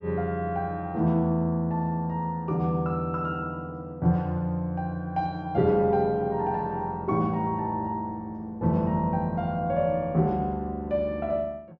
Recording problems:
treble missing; nothing above 7 kHz

